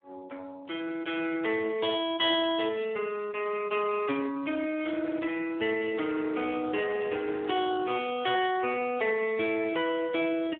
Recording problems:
telephone audio; 240 Hz to 3.4 kHz, Speex

